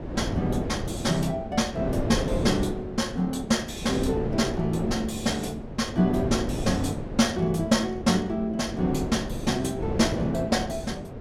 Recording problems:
wind noise; below 430 Hz, SNR 6 dB

